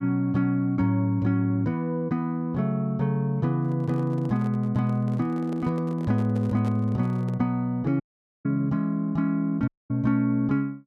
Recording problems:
microphone handling noise; from 3.5 to 7.5 s; peak -10 dB vs average level
audio cutting out; at 8 s and at 9.5 s

